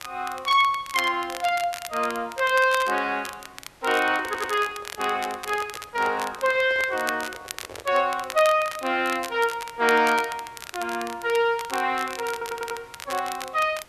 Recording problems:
background hiss; slope -3 dB per octave, SNR 27 dB
crackling; vinyl, SNR 13 dB
handling noise; from 4 to 8 s; peak -11 dB vs average level
stutter; at 4.5 s and at 12 s

